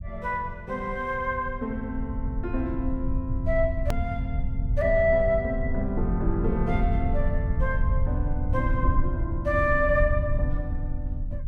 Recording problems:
low-frequency rumble; below 86 Hz, SNR 1 dB
edit click; at 4 s

